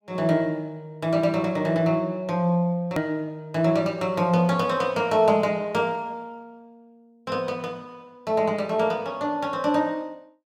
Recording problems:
edit click; at 3 s

